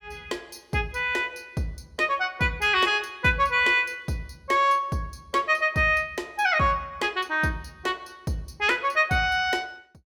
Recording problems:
none

